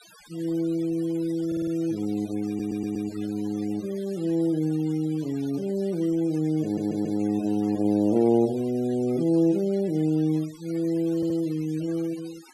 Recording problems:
denoising artefacts; signal-to-artefact ratio 22 dB
audio stuttering; 4 times, first at 1.5 s

